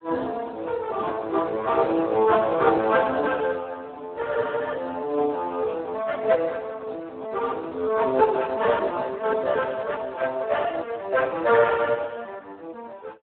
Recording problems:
telephone audio; 240 Hz to 3.9 kHz, Speex

